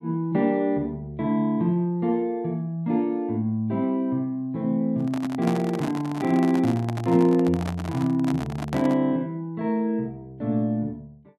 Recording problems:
microphone handling noise; from 5 to 9 s; peak -2 dB vs average level

